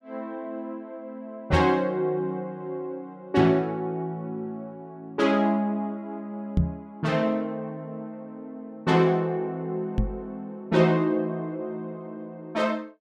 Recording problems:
knock on the microphone; at 1.5 s, at 6.5 s and at 10 s; peak +7 dB vs average level

